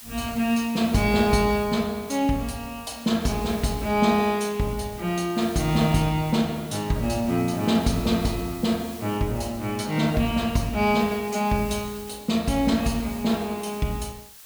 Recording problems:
background hiss; slope +2 dB per octave, SNR 18 dB

